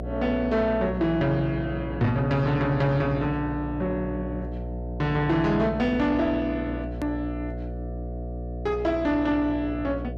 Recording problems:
distortion; soft clipping, signal-to-distortion ratio 11 dB
hum; 60 Hz, harmonics up to 720 Hz, SNR 9 dB
hard cut with a click; at 7 s

